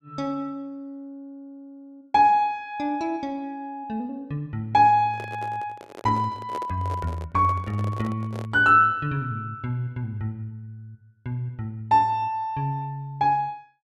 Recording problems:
microphone handling noise; from 5 to 8.5 s; peak -7 dB vs average level

